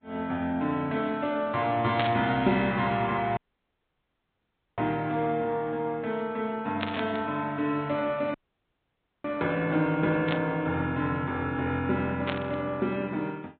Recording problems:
treble cut off; nothing above 4 kHz
lossy codec; Vorbis, log-spectral distance 2 dB
static burst; 4 times, first at 2 s; peak +2 dB vs average level
audio cutting out; at 3.5 s for 1.5 s and at 8.5 s for 1 s

